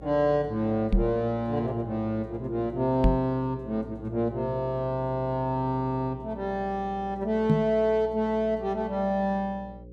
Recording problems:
hum; 60 Hz, harmonics up to 540 Hz, SNR 17 dB
knock on the microphone; at 1 s, at 3 s and at 7.5 s; peak +7 dB vs average level

